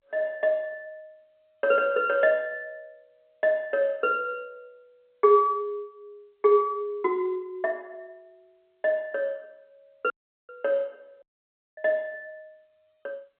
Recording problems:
telephone audio; 260 Hz to 3.4 kHz, G.711
audio cutting out; at 10 s and at 11 s for 0.5 s

